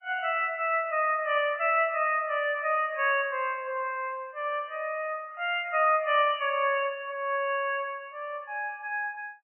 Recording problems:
lossy compression; MP3, log-spectral distance 3 dB, nothing above 2.9 kHz

